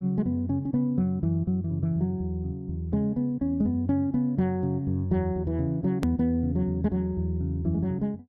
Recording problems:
hard cut with a click; at 6 s

